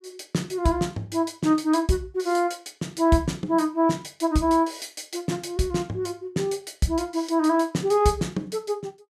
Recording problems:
none

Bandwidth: 14.5 kHz